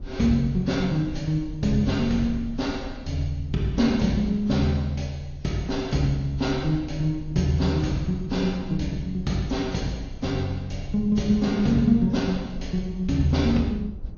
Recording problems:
lossy compression; MP2, then AAC, log-spectral distance 2 dB, nothing above 6.7 kHz
low-frequency rumble; below 72 Hz, SNR 16 dB

